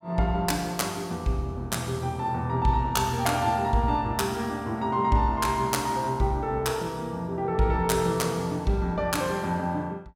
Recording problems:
none

